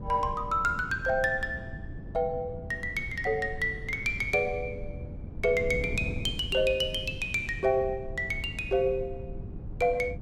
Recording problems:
wind noise; below 170 Hz, SNR 11 dB

